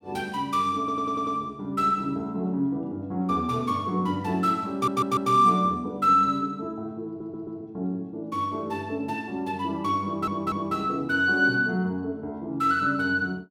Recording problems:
audio stuttering; 4 times, first at 1 s

